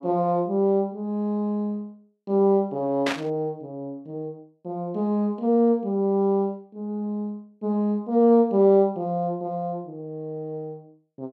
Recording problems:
burst of static; at 3 s; peak 0 dB vs average level

